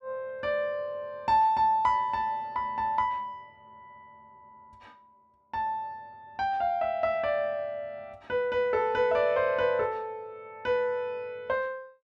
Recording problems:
none

